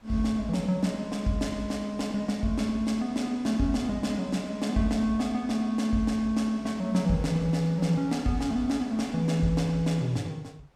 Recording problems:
wind on the microphone; below 1.3 kHz, SNR 27 dB

